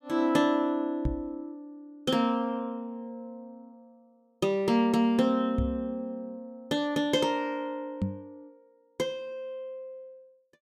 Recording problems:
knock on the microphone; at 1 s, at 5.5 s and at 8 s; peak +3 dB vs average level

